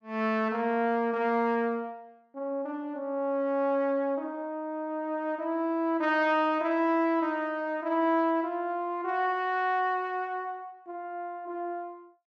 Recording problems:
none

